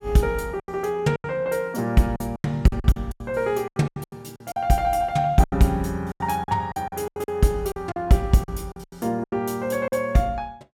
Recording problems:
packet loss; 15% of the sound replaced, filled with silence

